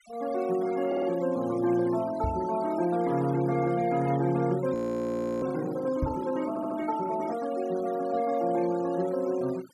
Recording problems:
denoising artefacts; signal-to-artefact ratio 18 dB
audio stuttering; at 1 s and at 6.5 s
microphone bump; at 2 s and at 6 s; peak +2 dB vs average level
frozen audio; at 4.5 s for 0.5 s

